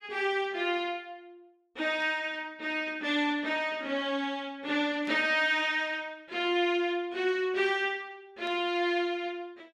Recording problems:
burst of static; at 2 s, at 5 s and at 8.5 s; peak -15 dB vs average level

